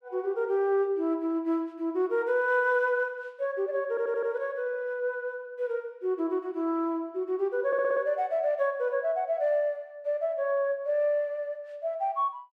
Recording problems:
stutter; at 4 s and at 7.5 s

